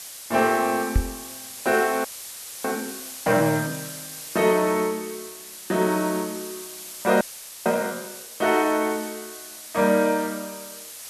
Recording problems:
background hiss; slope +2 dB per octave, SNR 12 dB
microphone thump; at 1 s; peak +6 dB vs average level
frozen audio; at 2 s for 0.5 s and at 7 s

